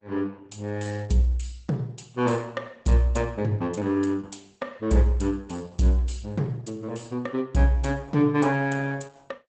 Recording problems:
lossy codec; Opus, log-spectral distance 4 dB, nothing above 8 kHz

